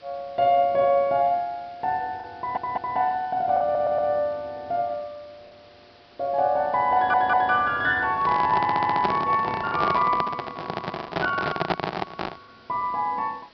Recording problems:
treble missing; nothing above 5.5 kHz
background hiss; slope -3 dB per octave, SNR 28 dB
packet loss; 2% of the sound replaced, filled with the last packet
stutter; 4 times, first at 2.5 s
handling noise; from 8 to 12 s; peak +4 dB vs average level

